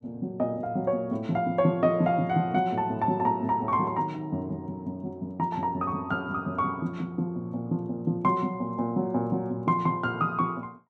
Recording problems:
none

